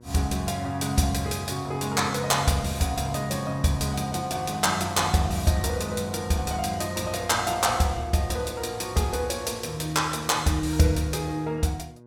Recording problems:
hum; 60 Hz, harmonics up to 1.1 kHz, SNR 25 dB

